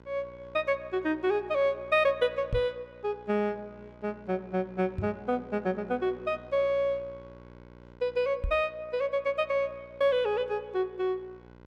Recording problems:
hum; 60 Hz, harmonics up to 2 kHz, SNR 22 dB
microphone bump; at 2.5 s, at 5 s and at 8.5 s; peak +1 dB vs average level

